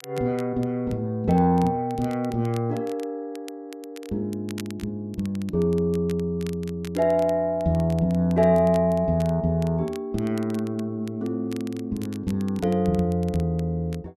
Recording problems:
crackle; vinyl, SNR 23 dB

